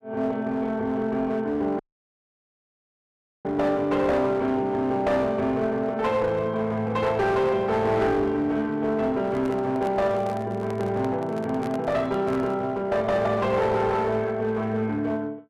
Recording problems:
distorted audio; hard clipping, uneven, signal-to-distortion ratio 10 dB
audio cutting out; at 2 s for 1.5 s
microphone handling noise; from 9 to 13 s; peak -7 dB vs average level

